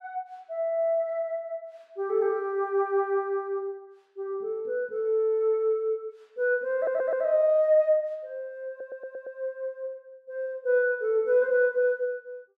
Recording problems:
stutter; at 7 s and at 8.5 s

